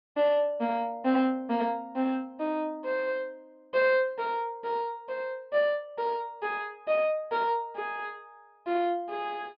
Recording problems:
treble cut off; nothing above 5.5 kHz

